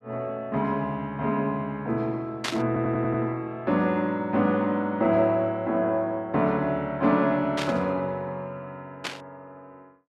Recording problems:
static burst; at 2.5 s, at 7.5 s and at 9 s; peak +1 dB vs average level
stutter; at 2.5 s

